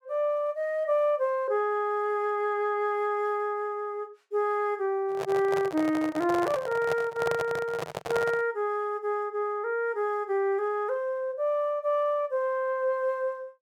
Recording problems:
handling noise; from 5 to 8.5 s; peak 0 dB vs average level

